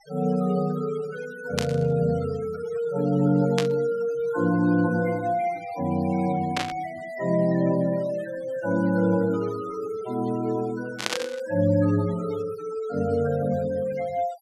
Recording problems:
noise reduction artefacts; signal-to-artefact ratio 21 dB
burst of static; 4 times, first at 1.5 s; peak +4 dB vs average level

